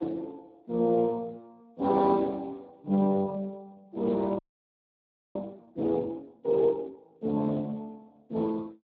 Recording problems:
codec artefacts; Speex, log-spectral distance 2 dB
frozen audio; at 4.5 s for 1 s

